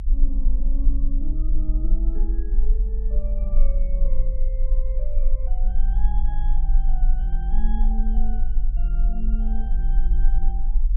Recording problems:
low-frequency rumble; below 42 Hz, strongest tone 20 Hz, SNR -13 dB

